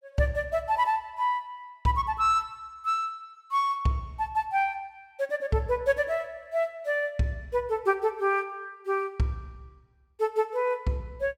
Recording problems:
none

